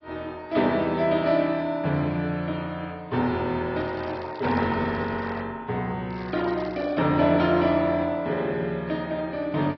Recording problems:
low-pass filter; nothing above 4.9 kHz
codec artefacts; AAC, log-spectral distance 2 dB
crackling; from 4 to 5.5 s and at 6 s; loose cable, SNR 27 dB

